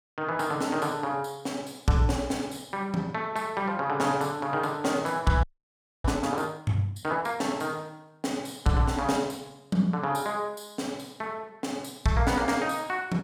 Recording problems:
frozen audio; at 5.5 s for 0.5 s

